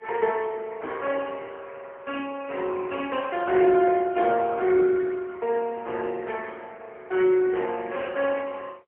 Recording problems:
telephone audio; 280 Hz to 3.1 kHz, AMR-NB, then MP3

